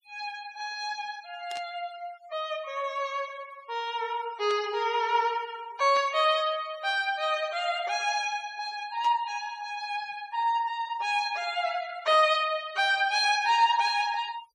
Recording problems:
noise reduction artefacts; signal-to-artefact ratio 21 dB
burst of static; 5 times, first at 1.5 s; peak -9 dB vs average level

